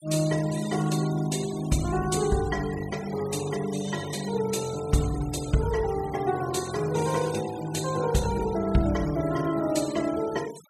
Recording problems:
noise reduction artefacts; signal-to-artefact ratio 15 dB

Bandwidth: 14 kHz